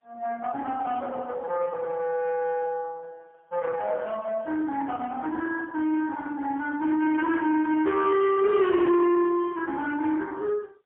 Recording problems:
phone line; 280 Hz to 2.7 kHz, AMR-NB, then MP3
distorted audio; soft clipping, signal-to-distortion ratio 12 dB

